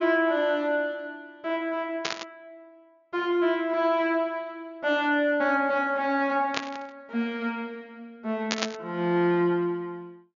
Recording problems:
treble missing; nothing above 7 kHz
static burst; at 2 s, at 6.5 s and at 8.5 s; peak +4 dB vs average level

